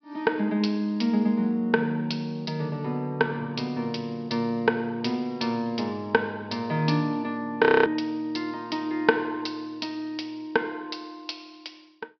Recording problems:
treble missing; nothing above 5.5 kHz
audio freezing; at 7.5 s

